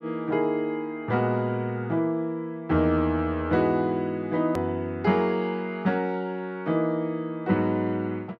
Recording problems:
click at an edit; at 4.5 s

